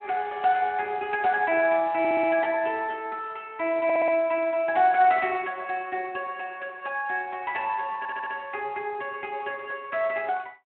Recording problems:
phone line; 240 Hz to 3.2 kHz, Speex
stutter; at 2 s, at 4 s and at 8 s

